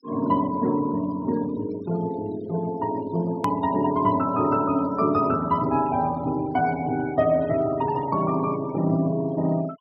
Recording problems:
treble missing; nothing above 5.6 kHz
noise reduction artefacts; signal-to-artefact ratio 21 dB
edit click; at 3.5 s

